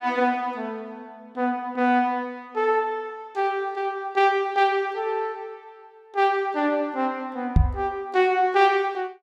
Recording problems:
microphone thump; at 7.5 s; peak +9 dB vs average level

